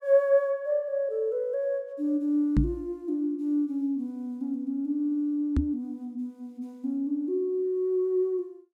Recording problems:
knock on the microphone; at 2.5 s and at 5.5 s; peak +7 dB vs average level

